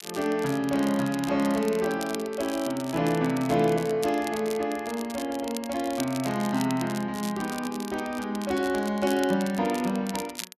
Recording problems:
crackling; vinyl, SNR 14 dB

